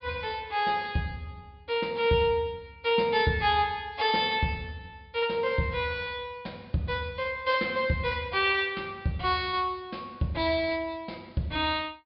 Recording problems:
treble missing; nothing above 5 kHz

